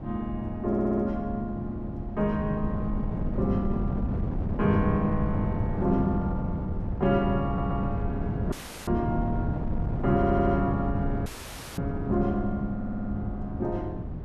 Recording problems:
wind on the microphone; below 200 Hz, SNR 3 dB
audio stuttering; 4 times, first at 0.5 s
audio cutting out; at 8.5 s and at 11 s for 0.5 s

